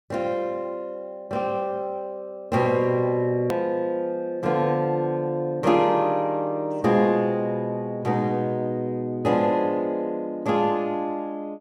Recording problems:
hard cut with a click; at 3.5 s

